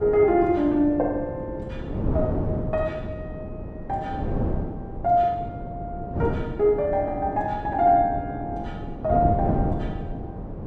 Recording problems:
wind on the microphone; below 330 Hz, SNR 7 dB

